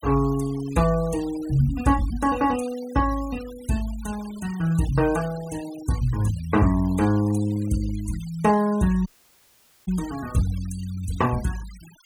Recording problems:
noise reduction artefacts; signal-to-artefact ratio 18 dB
audio cutting out; at 9 s for 1 s

